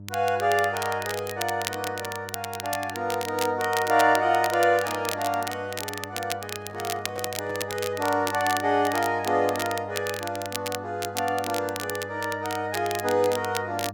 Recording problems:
hum; 50 Hz, harmonics up to 600 Hz, SNR 17 dB
crackle; vinyl, SNR 9 dB
handling noise; from 6.5 to 8 s; peak -8 dB vs average level

